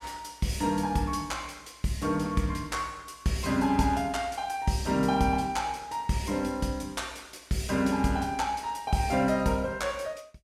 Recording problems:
none

